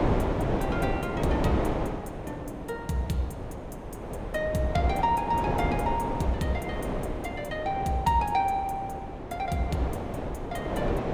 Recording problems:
wind on the microphone; below 650 Hz, SNR 2 dB

